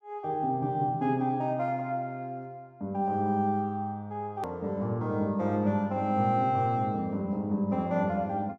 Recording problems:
edit click; at 4.5 s

